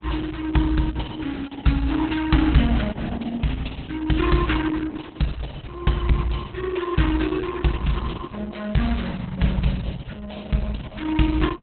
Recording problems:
lossy codec; Opus, log-spectral distance 6 dB, nothing above 4 kHz

